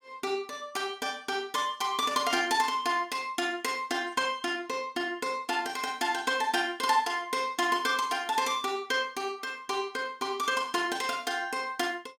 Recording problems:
none

